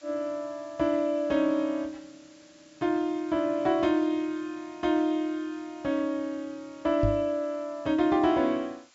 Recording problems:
low-pass filter; nothing above 8 kHz
background hiss; slope +1 dB per octave, SNR 28 dB
microphone bump; at 7 s; peak +3 dB vs average level

